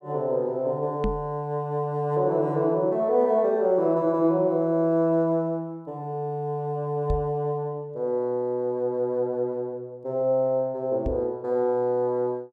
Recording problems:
microphone thump; at 1 s, at 7 s and at 11 s; peak 0 dB vs average level

